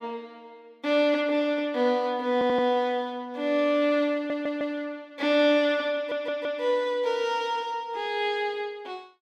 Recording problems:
audio stuttering; at 2.5 s, at 4 s and at 6 s

